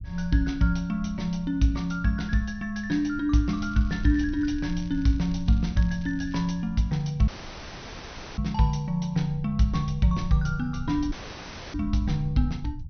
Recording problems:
low-pass filter; nothing above 6.2 kHz
low-frequency rumble; below 90 Hz, SNR 13 dB
crackle; from 3.5 to 6.5 s; loose cable, SNR 27 dB
dropout; at 7.5 s for 1 s and at 11 s for 0.5 s

